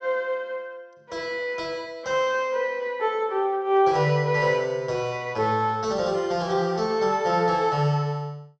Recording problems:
treble missing; nothing above 8 kHz

